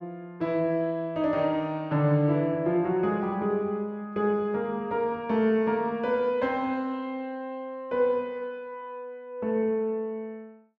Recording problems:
none

